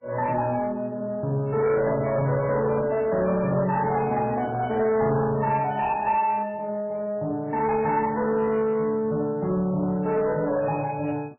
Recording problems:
lossy codec; MP3, log-spectral distance 2 dB, nothing above 2.7 kHz
distortion; soft clipping, signal-to-distortion ratio 11 dB
handling noise; from 3.5 to 5 s; peak -9 dB vs average level

